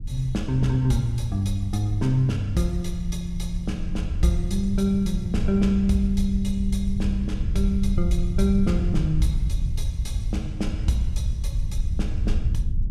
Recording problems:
low-frequency rumble; below 82 Hz, SNR 3 dB

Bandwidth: 14.5 kHz